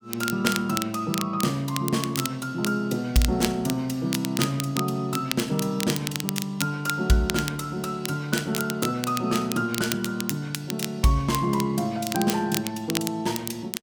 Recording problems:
crackling; vinyl, SNR 7 dB

